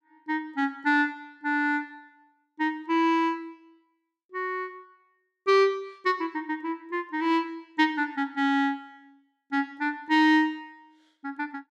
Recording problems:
none

